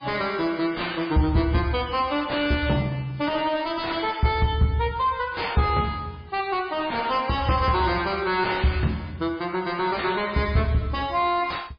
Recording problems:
lossy compression; MP3, log-spectral distance 5 dB
distortion; soft clipping, signal-to-distortion ratio 6 dB

